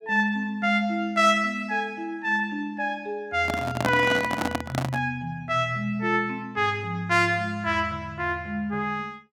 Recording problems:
microphone handling noise; from 3.5 to 5 s; peak +4 dB vs average level

